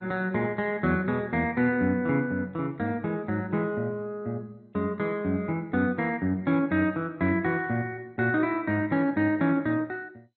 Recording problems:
lossy codec; MP2, log-spectral distance 2 dB, nothing above 4 kHz

